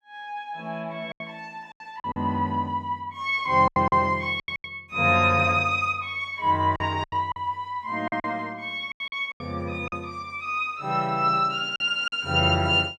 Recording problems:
lost packets; 8% of the sound replaced, filled with silence

